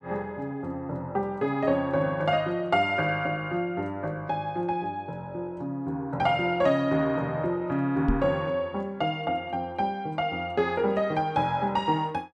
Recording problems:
knock on the microphone; at 8 s; peak +4 dB vs average level

